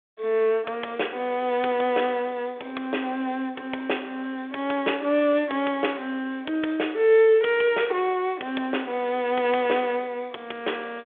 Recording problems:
telephone audio; 320 Hz to 3.5 kHz, G.726

